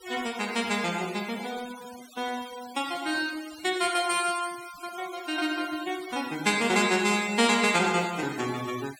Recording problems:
noise reduction artefacts; signal-to-artefact ratio 16 dB

